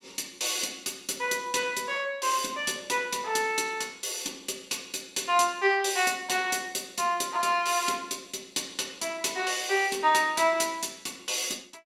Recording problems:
none

